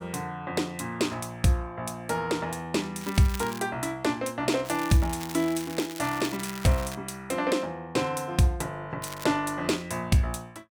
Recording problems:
crackling; at 3 s, from 4.5 to 7 s and at 9 s; loose cable, SNR 13 dB

